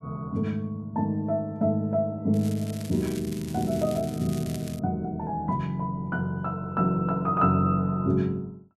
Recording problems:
crackling; from 2.5 to 5 s; loose cable, SNR 17 dB

